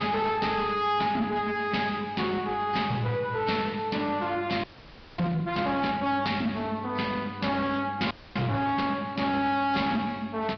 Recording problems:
treble cut off; nothing above 5 kHz
codec artefacts; AAC, log-spectral distance 2 dB
distorted audio; soft clipping, signal-to-distortion ratio 10 dB
hum; 50 Hz, harmonics up to 700 Hz, SNR 18 dB
frozen audio; at 4.5 s for 0.5 s and at 8 s

